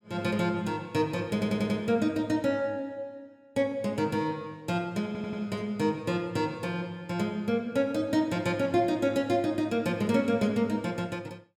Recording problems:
audio stuttering; at 1.5 s and at 5 s

